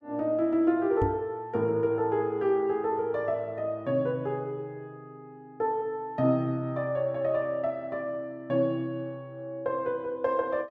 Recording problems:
microphone bump; at 1 s; peak +2 dB vs average level

